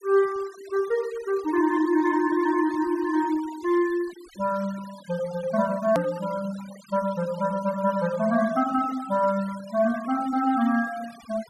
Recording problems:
noise reduction artefacts; signal-to-artefact ratio 20 dB
edit click; at 6 s

